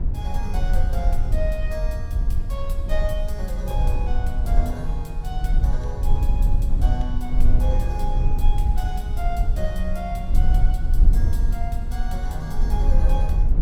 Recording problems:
low-frequency rumble; below 52 Hz, strongest tone 20 Hz, SNR -9 dB

